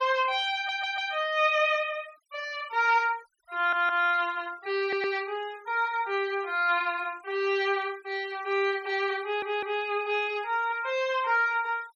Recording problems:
denoising artefacts; signal-to-artefact ratio 25 dB
stutter; 4 times, first at 0.5 s

